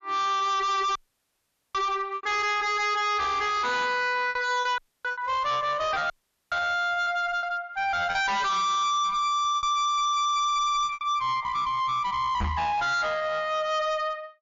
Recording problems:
codec artefacts; MP3, log-spectral distance 2 dB, nothing above 5.8 kHz
distortion; hard clipping, uneven, signal-to-distortion ratio 5 dB
packet loss; 5% of the sound replaced, filled with repeated pitch periods
audio cutting out; at 1 s for 1 s, at 5 s and at 6 s
microphone thump; at 12 s; peak +1 dB vs average level

